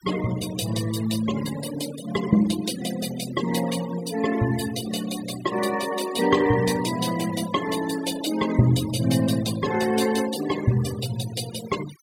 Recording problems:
noise reduction artefacts; signal-to-artefact ratio 12 dB

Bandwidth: 17 kHz